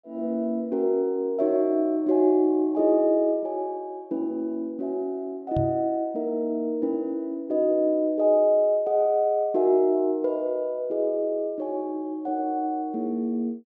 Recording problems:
knock on the microphone; at 5.5 s; peak -1 dB vs average level

